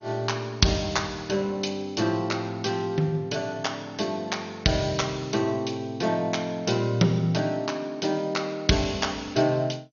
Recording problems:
codec artefacts; MP2, log-spectral distance 5 dB, nothing above 6.7 kHz

